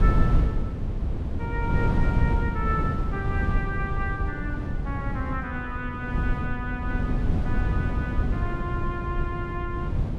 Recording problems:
wind noise; below 150 Hz, SNR -5 dB

